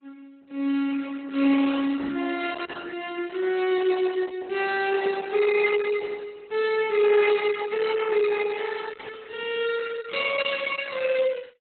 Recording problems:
lossy codec; Opus, log-spectral distance 4 dB, nothing above 4.1 kHz

